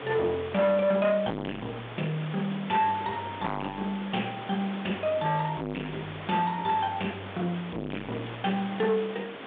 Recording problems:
telephone audio; 220 Hz to 3.5 kHz, G.726
distortion; hard clipping, signal-to-distortion ratio 4 dB
hiss; SNR 11 dB

